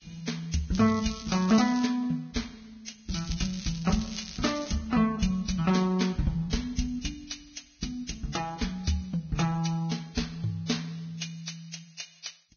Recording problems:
lossy codec; Vorbis, log-spectral distance 6 dB, nothing above 6.5 kHz
crackle; from 0.5 to 2 s and from 3 to 5 s; loose cable, SNR 12 dB

